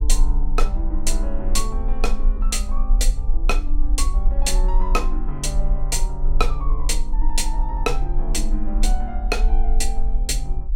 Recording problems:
rumble; below 38 Hz, strongest tone 20 Hz, SNR -3 dB

